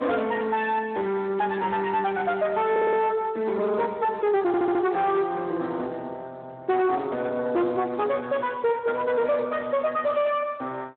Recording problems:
phone line; 220 Hz to 3.7 kHz, Speex
distorted audio; soft clipping, signal-to-distortion ratio 10 dB
audio stuttering; at 2.5 s and at 4.5 s

